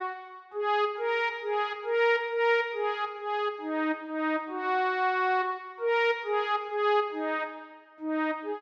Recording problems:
none

